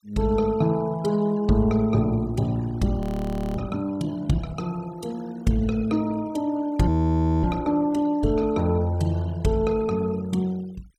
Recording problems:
denoising artefacts; signal-to-artefact ratio 24 dB
frozen audio; at 3 s for 0.5 s and at 7 s for 0.5 s

